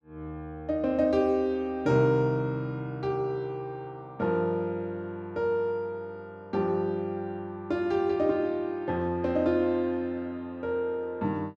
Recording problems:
none

